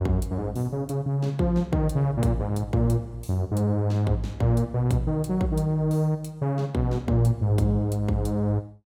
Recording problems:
none

